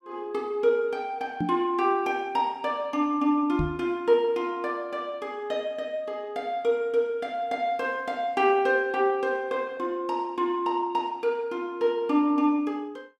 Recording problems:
knock on the microphone; at 1.5 s and at 3.5 s; peak +1 dB vs average level

